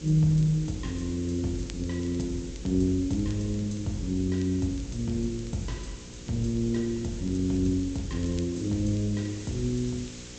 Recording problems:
low-pass filter; nothing above 8 kHz
hum; 60 Hz, harmonics up to 540 Hz, SNR 18 dB
hiss; slope +1 dB per octave, SNR 17 dB
wind on the microphone; below 230 Hz, SNR 21 dB
crackle; vinyl, SNR 27 dB

